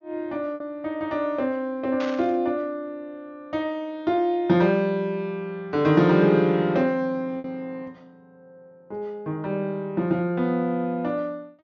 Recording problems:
treble cut off; nothing above 6.9 kHz
packet loss; 1.3% of the sound replaced, filled with repeated pitch periods
burst of static; at 2 s; peak -7 dB vs average level

